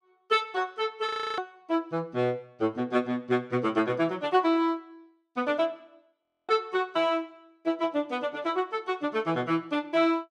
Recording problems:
audio freezing; at 1 s and at 6 s

